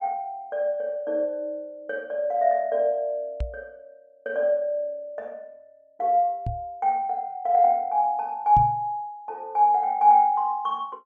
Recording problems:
microphone bump; at 3.5 s, at 6.5 s and at 8.5 s; peak -1 dB vs average level

